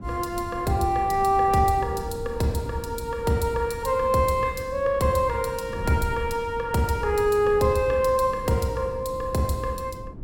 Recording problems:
wind on the microphone; below 190 Hz, SNR 14 dB

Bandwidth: 17 kHz